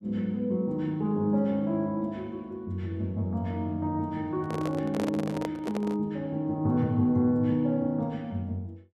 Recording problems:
microphone handling noise; from 4.5 to 6 s; peak -1 dB vs average level

